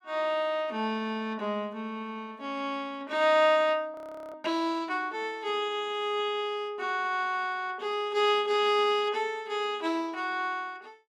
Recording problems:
frozen audio; at 4 s

